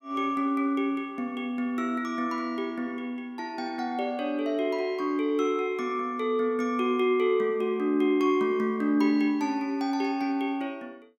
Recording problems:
none

